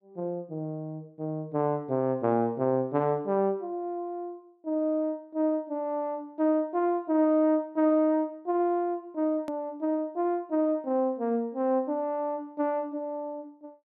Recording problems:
edit click; at 9.5 s

